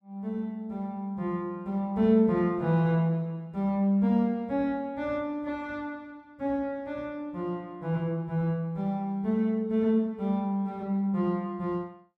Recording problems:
none

